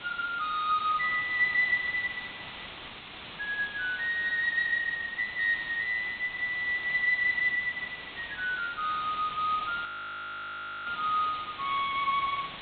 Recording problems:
low-pass filter; nothing above 4 kHz
hiss; SNR 13 dB
audio freezing; at 10 s for 1 s

